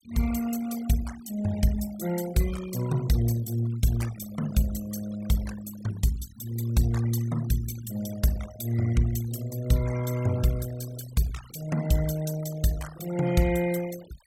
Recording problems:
denoising artefacts; signal-to-artefact ratio 15 dB

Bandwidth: 17.5 kHz